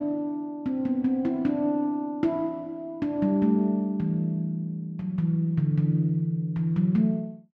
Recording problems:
none

